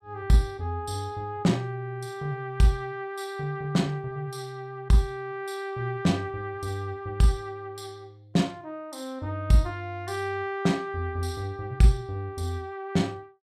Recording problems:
none

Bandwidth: 15 kHz